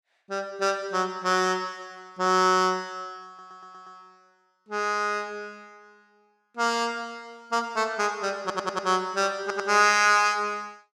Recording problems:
audio stuttering; at 3.5 s, at 8.5 s and at 9.5 s

